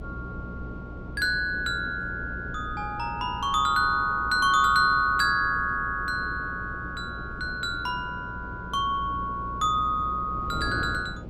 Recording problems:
hum; 60 Hz, harmonics up to 600 Hz, SNR 16 dB
wind on the microphone; below 350 Hz, SNR 15 dB

